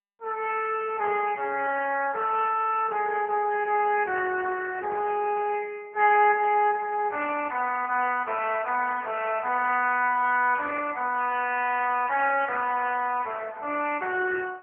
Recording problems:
telephone audio; 260 Hz to 3 kHz, AMR-NB

